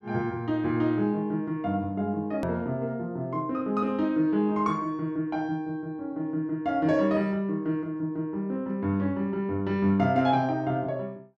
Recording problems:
click at an edit; at 2.5 s

